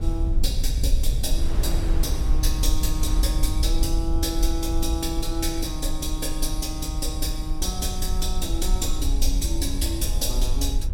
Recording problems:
low-frequency rumble; below 54 Hz, SNR -2 dB
wind noise; below 840 Hz, SNR 15 dB

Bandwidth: 17 kHz